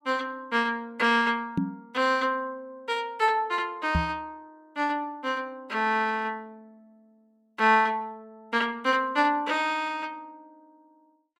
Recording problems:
microphone bump; at 1.5 s and at 4 s; peak +4 dB vs average level

